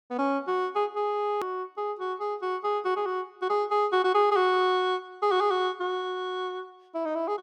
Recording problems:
click at an edit; at 1.5 s

